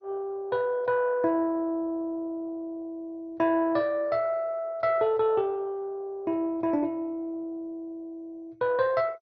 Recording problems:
codec artefacts; MP2, log-spectral distance 2 dB, nothing above 5 kHz

